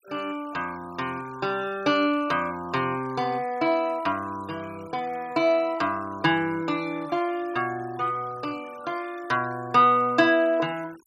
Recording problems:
denoising artefacts; signal-to-artefact ratio 24 dB

